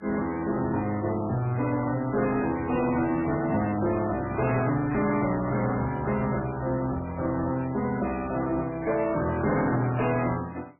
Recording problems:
codec artefacts; MP3, then MP3, log-spectral distance 4 dB, nothing above 2.5 kHz
distortion; hard clipping, uneven, signal-to-distortion ratio 10 dB

